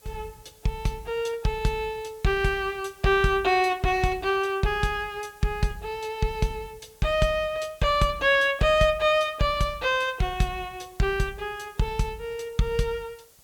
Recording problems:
background hiss; SNR 28 dB

